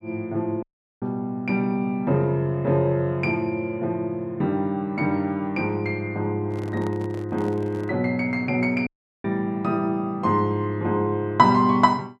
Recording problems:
dropout; at 0.5 s and at 9 s
handling noise; from 6.5 to 8 s; peak -10 dB vs average level

